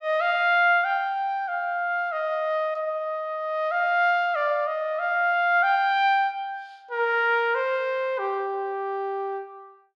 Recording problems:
none

